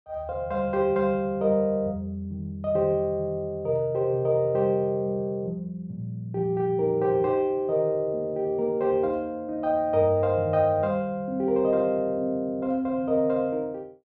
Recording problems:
none

